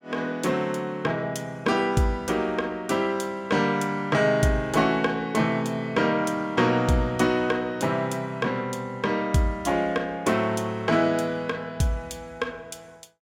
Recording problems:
none

